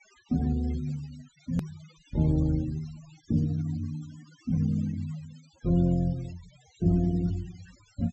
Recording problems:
low-pass filter; nothing above 7.9 kHz
noise reduction artefacts; signal-to-artefact ratio 23 dB
hard cut with a click; at 1.5 s

